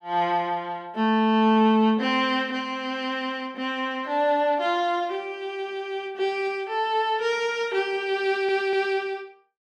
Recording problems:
audio stuttering; at 8.5 s

